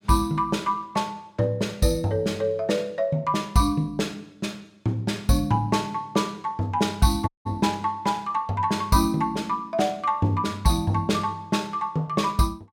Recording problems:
dropout; at 7.5 s

